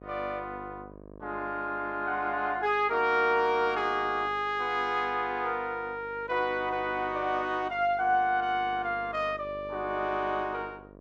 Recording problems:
hum; 50 Hz, harmonics up to 1.3 kHz, SNR 20 dB

